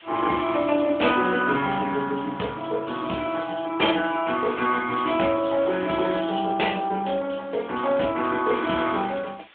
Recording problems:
phone line; 260 Hz to 3.6 kHz, AMR-NB
hiss; SNR 25 dB

